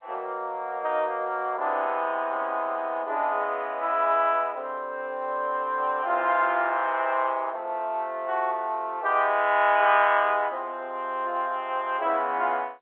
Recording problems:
telephone audio; 280 Hz to 3.4 kHz, G.711

